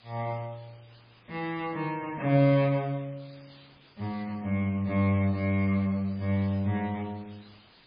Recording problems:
codec artefacts; MP3, then MP3, log-spectral distance 8 dB
background hiss; SNR 27 dB

